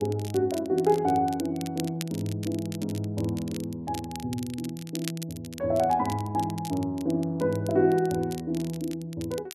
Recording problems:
crackle; vinyl, SNR 16 dB

